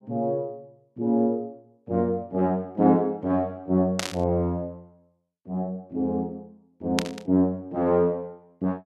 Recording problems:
burst of static; at 4 s and at 7 s; peak +4 dB vs average level

